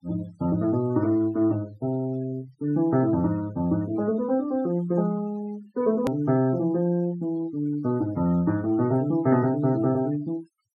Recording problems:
noise reduction artefacts; signal-to-artefact ratio 22 dB
click at an edit; at 6 s

